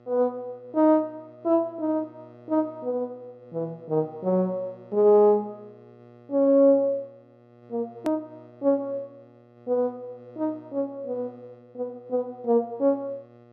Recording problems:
hum; 60 Hz, harmonics up to 2 kHz, SNR 26 dB
edit click; at 8 s

